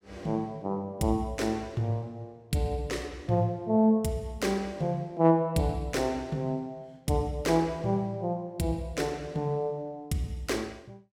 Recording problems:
none

